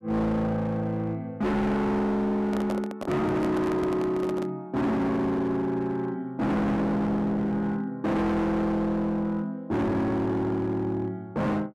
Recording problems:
distorted audio; hard clipping, uneven, signal-to-distortion ratio 6 dB
handling noise; from 2.5 to 4.5 s; peak -2 dB vs average level

